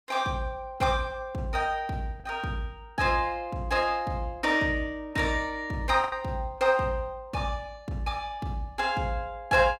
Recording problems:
packet loss; 1.2% of the sound replaced, filled with the last packet

